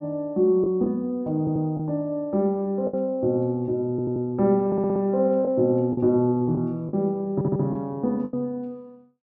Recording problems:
lost packets; 4% of the sound replaced, filled with the last packet
audio stuttering; 4 times, first at 1.5 s

